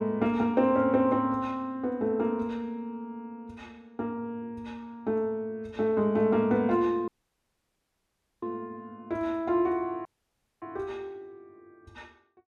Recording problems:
audio cutting out; at 7 s for 1.5 s and at 10 s for 0.5 s

